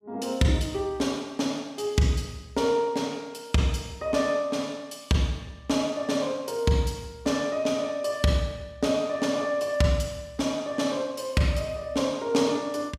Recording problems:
none

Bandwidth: 15 kHz